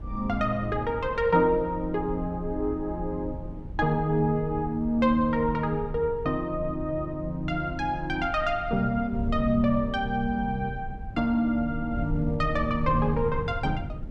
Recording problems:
wind on the microphone; below 110 Hz, SNR 10 dB

